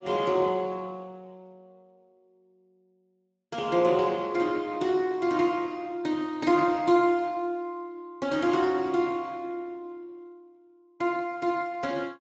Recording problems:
lossy compression; Speex, log-spectral distance 3 dB, nothing above 7.3 kHz

